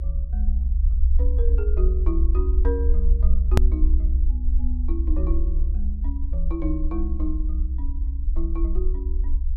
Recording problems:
rumble; below 64 Hz, SNR -10 dB
click at an edit; at 3.5 s

